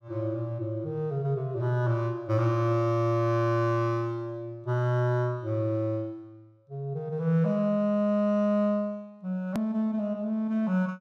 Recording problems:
edit click; at 9.5 s

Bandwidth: 14.5 kHz